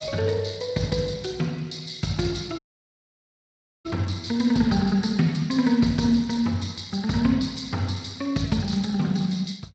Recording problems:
lossy codec; Speex, log-spectral distance 6 dB, nothing above 7.3 kHz
dropout; at 2.5 s for 1.5 s

